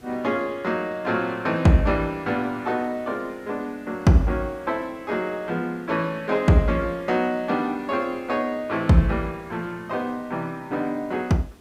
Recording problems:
background hiss; SNR 26 dB

